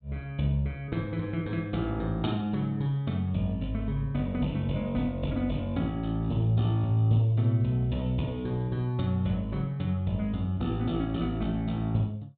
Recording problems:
treble cut off; nothing above 4 kHz

